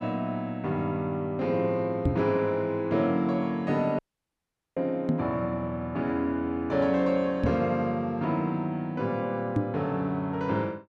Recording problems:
microphone thump; 4 times, first at 2 s; peak +5 dB vs average level
dropout; at 4 s for 1 s

